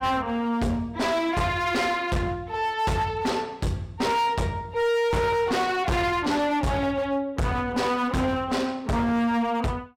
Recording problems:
distortion; hard clipping, uneven, signal-to-distortion ratio 7 dB

